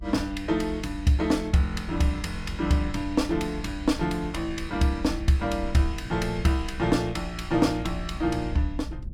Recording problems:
rumble; below 68 Hz, SNR 11 dB

